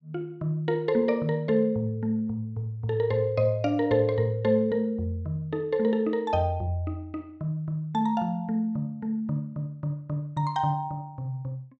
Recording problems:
none

